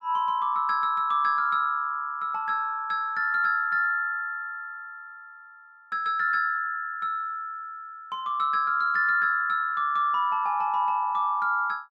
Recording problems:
none

